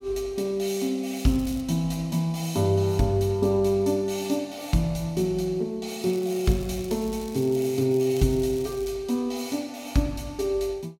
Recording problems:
crackling; at 1 s, from 6 to 8 s and at 8 s; loose cable, SNR 20 dB

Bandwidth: 16.5 kHz